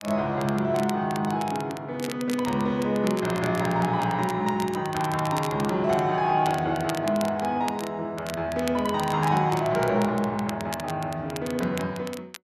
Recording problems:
crackling; vinyl, SNR 15 dB

